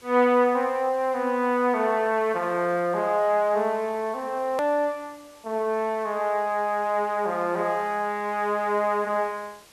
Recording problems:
hiss; slope -2 dB per octave, SNR 27 dB
click at an edit; at 4.5 s

